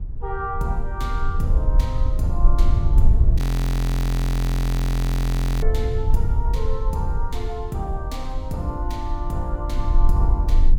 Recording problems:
low-frequency rumble; below 58 Hz, SNR -7 dB
audio freezing; at 3.5 s for 2 s

